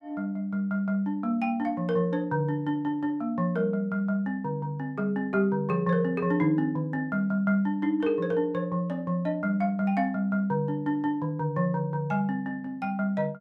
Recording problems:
none

